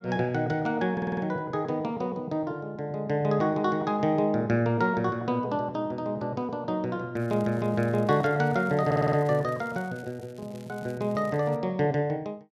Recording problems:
stutter; at 1 s and at 9 s
crackling; from 7 to 12 s; loose cable, SNR 28 dB

